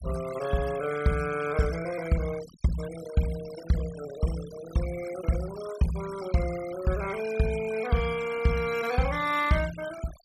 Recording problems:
noise reduction artefacts; signal-to-artefact ratio 14 dB

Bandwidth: 14.5 kHz